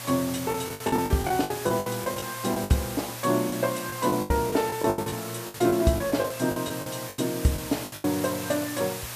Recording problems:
electrical hum; 60 Hz, harmonics up to 600 Hz, SNR 19 dB
background hiss; SNR 9 dB
lost packets; 15% of the sound replaced, filled with the last packet

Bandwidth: 14.5 kHz